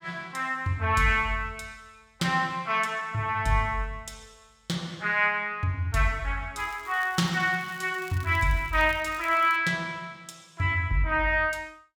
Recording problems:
crackling; from 6.5 to 9.5 s; loose cable, SNR 23 dB

